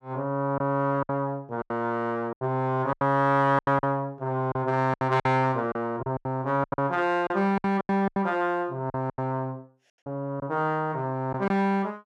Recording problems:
lost packets; 11% of the sound replaced, filled with silence

